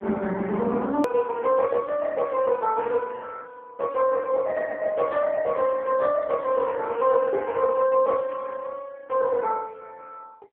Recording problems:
phone line; 130 Hz to 2.8 kHz, AMR-NB
edit click; at 1 s

